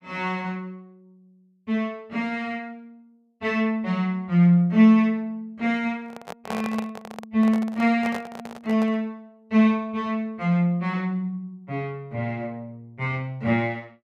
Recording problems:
handling noise; from 6 to 9 s; peak -4 dB vs average level

